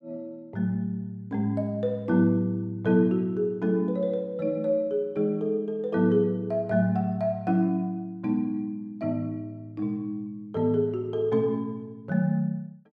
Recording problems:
none

